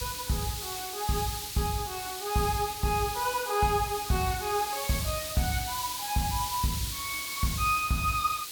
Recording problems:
background hiss; SNR 5 dB

